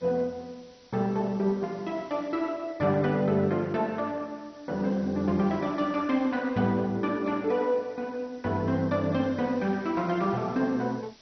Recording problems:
lossy codec; MP2, log-spectral distance 5 dB, nothing above 5.8 kHz
hiss; SNR 28 dB

